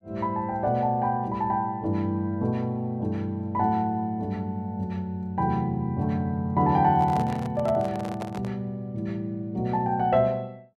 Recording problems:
microphone handling noise; from 7 to 8.5 s; peak -6 dB vs average level

